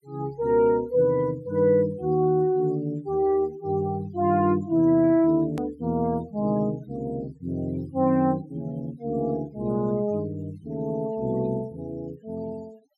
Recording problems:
denoising artefacts; signal-to-artefact ratio 26 dB
click at an edit; at 5.5 s

